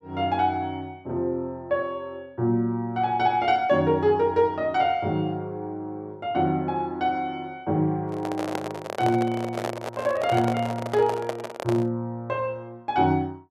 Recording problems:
microphone handling noise; from 8 to 12 s; peak 0 dB vs average level

